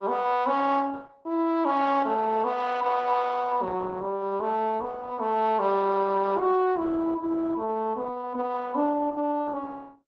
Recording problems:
lossy compression; Opus, log-spectral distance 3 dB

